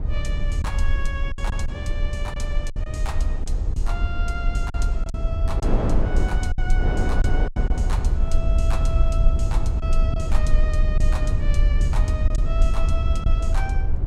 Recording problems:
low-frequency rumble; below 58 Hz, SNR -8 dB
wind on the microphone; below 530 Hz, SNR 3 dB
packet loss; 5% of the sound replaced, filled with silence

